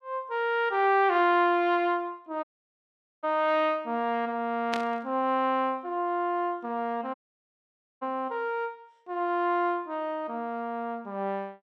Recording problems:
dropout; at 2.5 s for 1 s and at 7 s for 1 s
burst of static; at 4.5 s; peak -1 dB vs average level

